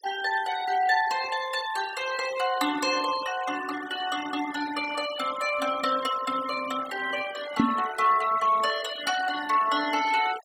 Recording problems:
denoising artefacts; signal-to-artefact ratio 12 dB
microphone bump; at 7.5 s; peak +8 dB vs average level

